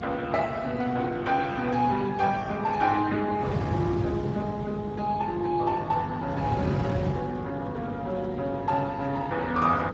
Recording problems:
lossy codec; Speex, log-spectral distance 3 dB
electrical hum; 50 Hz, harmonics up to 550 Hz, SNR 12 dB
wind noise; below 290 Hz, SNR 8 dB

